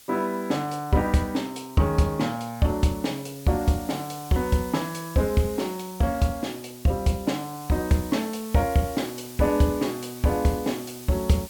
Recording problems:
background hiss; slope +1 dB per octave, SNR 17 dB

